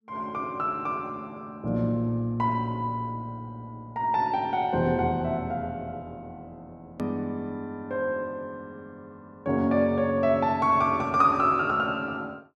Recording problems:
click at an edit; at 7 s

